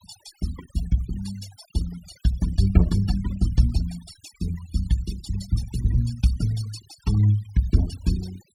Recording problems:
noise reduction artefacts; signal-to-artefact ratio 16 dB

